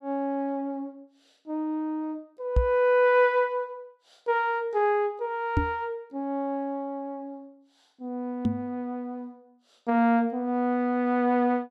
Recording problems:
microphone bump; at 2.5 s, at 5.5 s and at 8.5 s; peak +7 dB vs average level

